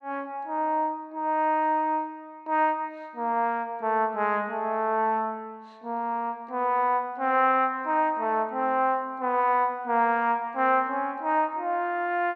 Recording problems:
none

